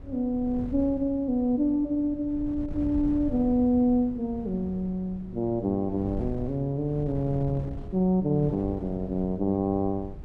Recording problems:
wind on the microphone; below 150 Hz, SNR 13 dB

